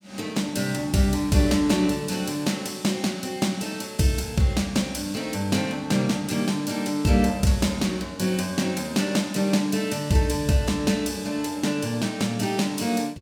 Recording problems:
none

